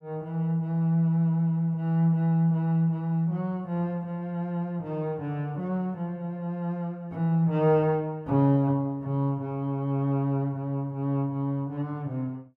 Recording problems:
none

